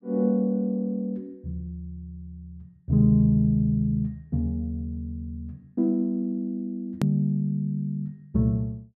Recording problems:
click at an edit; at 7 s

